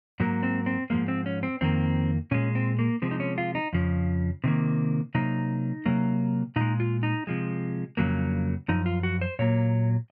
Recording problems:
none

